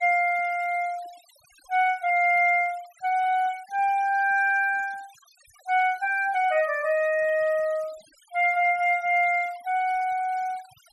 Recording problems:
denoising artefacts; signal-to-artefact ratio 26 dB

